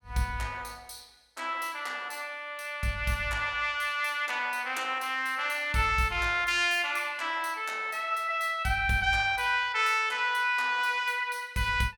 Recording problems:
none

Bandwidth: 17 kHz